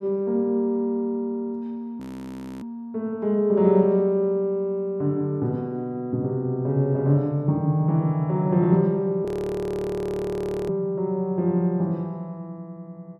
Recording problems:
audio freezing; at 2 s for 0.5 s and at 9.5 s for 1.5 s

